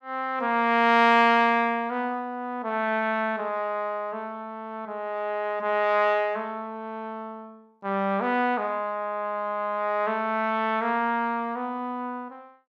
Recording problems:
none

